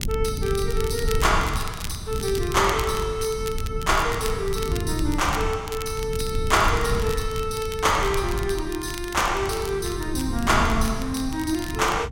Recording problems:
rumble; below 110 Hz, SNR 6 dB
crackle; vinyl, SNR 14 dB

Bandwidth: 16 kHz